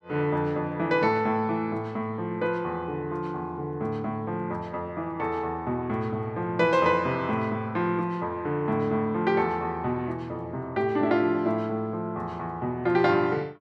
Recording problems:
none

